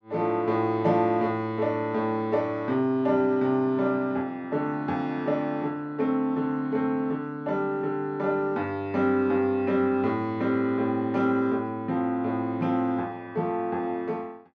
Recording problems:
none

